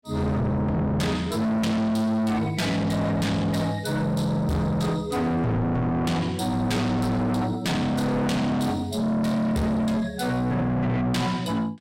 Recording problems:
distorted audio; soft clipping, signal-to-distortion ratio 6 dB

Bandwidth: 16 kHz